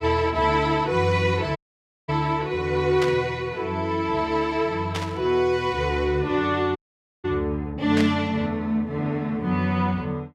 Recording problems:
audio cutting out; at 1.5 s for 0.5 s and at 7 s
static burst; at 3 s, at 5 s and at 8 s; peak -2 dB vs average level

